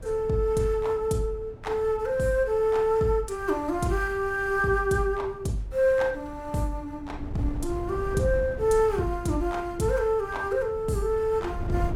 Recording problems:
wind noise; below 120 Hz, SNR 14 dB

